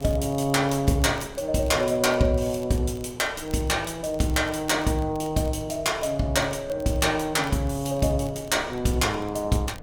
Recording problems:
wind on the microphone; below 460 Hz, SNR 20 dB
crackling; vinyl, SNR 27 dB

